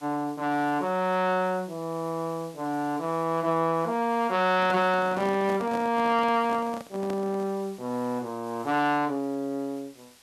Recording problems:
hiss; slope 0 dB per octave, SNR 25 dB
handling noise; from 4.5 to 7.5 s; peak -6 dB vs average level

